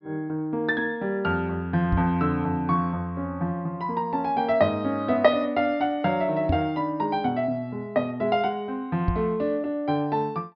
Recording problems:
low-pass filter; nothing above 5.5 kHz
microphone thump; at 2 s, at 6.5 s and at 9 s; peak +4 dB vs average level

